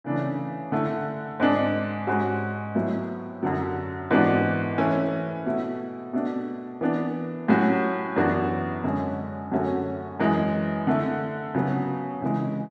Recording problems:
none

